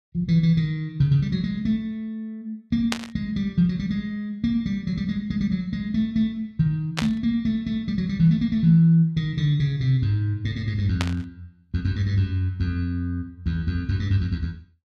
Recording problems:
static burst; at 3 s, at 7 s and at 11 s; peak +2 dB vs average level

